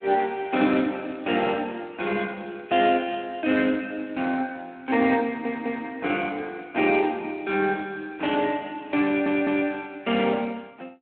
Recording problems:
telephone audio; 220 Hz to 3.5 kHz, Speex
audio stuttering; at 5.5 s and at 9 s

